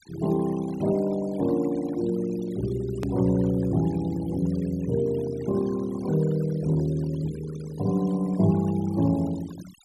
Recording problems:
noise reduction artefacts; signal-to-artefact ratio 19 dB
hard cut with a click; at 3 s

